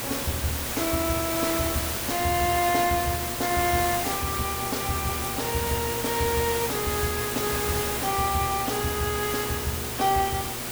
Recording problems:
hum; 60 Hz, harmonics up to 1.1 kHz, SNR 13 dB
background hiss; slope -2 dB per octave, SNR 1 dB

